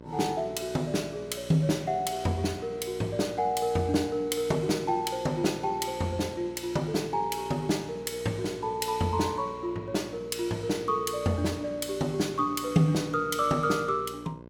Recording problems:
electrical hum; 60 Hz, harmonics up to 1.6 kHz, SNR 17 dB

